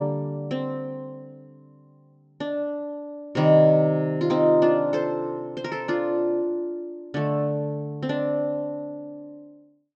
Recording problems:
low-pass filter; nothing above 8 kHz

